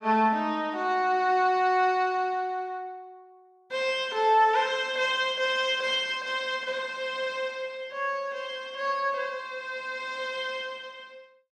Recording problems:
none

